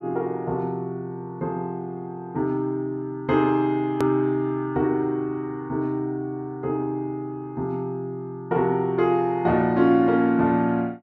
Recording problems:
hard cut with a click; at 4 s

